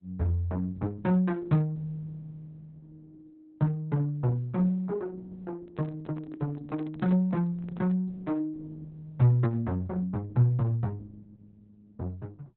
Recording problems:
lossy compression; Opus, log-spectral distance 2 dB, nothing above 4 kHz
microphone handling noise; from 5.5 to 8 s; peak -8 dB vs average level

